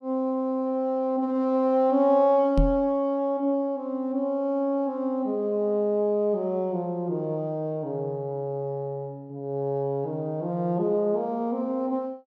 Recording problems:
microphone thump; at 2.5 s; peak +5 dB vs average level

